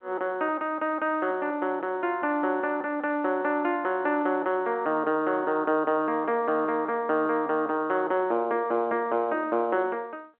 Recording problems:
telephone audio; 260 Hz to 3.4 kHz, G.711

